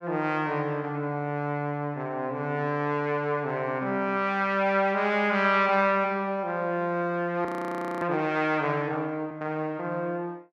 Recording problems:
frozen audio; at 7.5 s for 0.5 s

